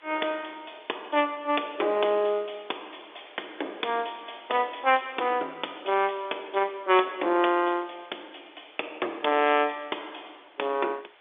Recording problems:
phone line; 280 Hz to 3.6 kHz, G.711
background hiss; SNR 27 dB

